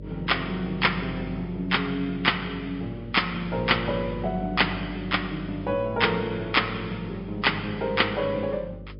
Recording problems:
treble missing; nothing above 5.2 kHz
lossy codec; MP3, log-spectral distance 3 dB
hum; 50 Hz, harmonics up to 600 Hz, SNR 15 dB

